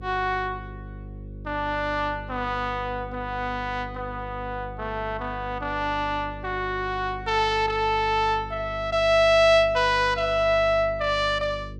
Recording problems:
hum; 50 Hz, harmonics up to 550 Hz, SNR 15 dB

